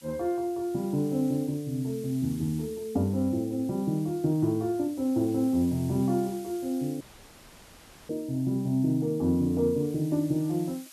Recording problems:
hiss; slope +3 dB per octave, SNR 22 dB
audio cutting out; at 7 s for 1 s

